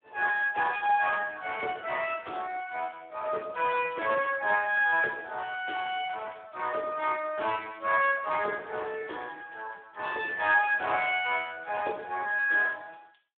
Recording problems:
telephone audio; 340 Hz to 3.5 kHz, Speex

